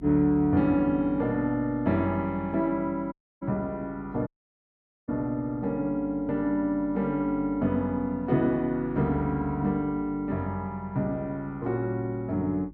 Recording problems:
hum; 50 Hz, harmonics up to 350 Hz, SNR 21 dB
audio cutting out; at 3 s and at 4.5 s for 1 s

